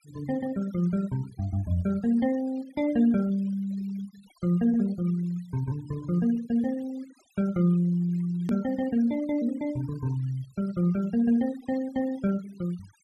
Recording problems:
denoising artefacts; signal-to-artefact ratio 24 dB
click at an edit; at 8.5 s

